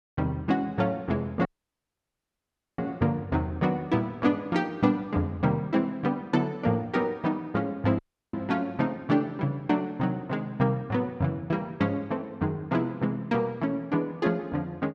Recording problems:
audio cutting out; at 1.5 s for 1.5 s and at 8 s

